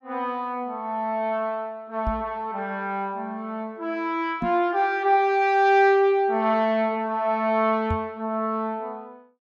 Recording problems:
knock on the microphone; at 2 s, at 4.5 s and at 8 s; peak -1 dB vs average level

